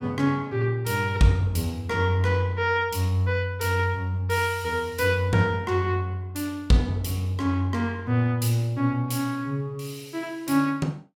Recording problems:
none

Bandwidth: 16.5 kHz